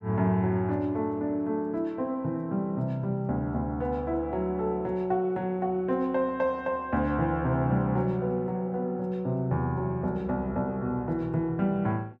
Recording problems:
none

